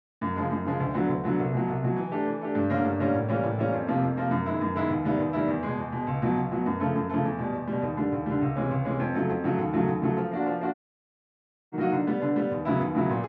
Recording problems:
audio cutting out; at 11 s for 1 s

